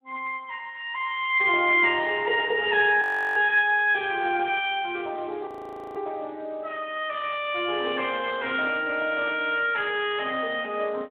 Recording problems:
telephone audio; 320 Hz to 3.5 kHz, Speex
audio freezing; at 3 s and at 5.5 s

